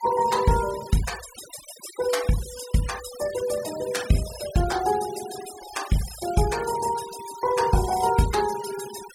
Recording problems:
denoising artefacts; signal-to-artefact ratio 12 dB

